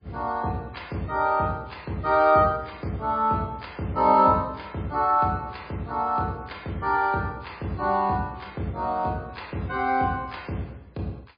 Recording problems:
lossy codec; MP3, log-spectral distance 3 dB, nothing above 4.4 kHz

